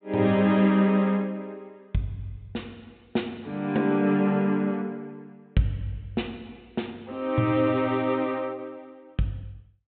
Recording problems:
low-pass filter; nothing above 4 kHz

